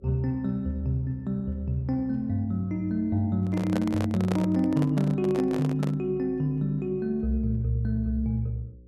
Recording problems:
hum; 60 Hz, harmonics up to 540 Hz, SNR 25 dB
microphone handling noise; from 3.5 to 6 s; peak 0 dB vs average level

